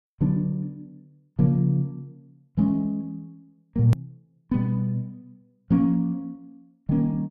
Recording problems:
edit click; at 4 s

